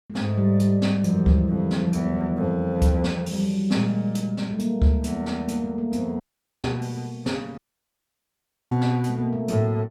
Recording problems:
audio cutting out; at 6 s and at 7.5 s for 1 s

